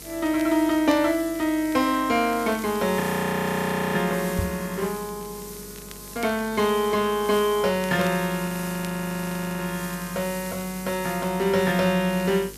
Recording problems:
hum; 50 Hz, harmonics up to 500 Hz, SNR 23 dB
background hiss; SNR 15 dB
crackle; vinyl, SNR 25 dB
audio freezing; at 3 s for 1 s and at 8.5 s for 1 s
microphone bump; at 4.5 s; peak +1 dB vs average level

